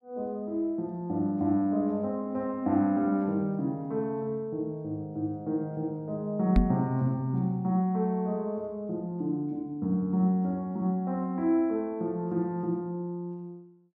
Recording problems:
knock on the microphone; at 6.5 s; peak +8 dB vs average level

